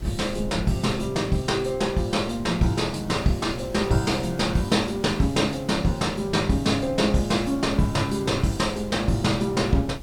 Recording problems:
background hiss; slope -3 dB per octave, SNR 24 dB
wind on the microphone; below 180 Hz, SNR 16 dB

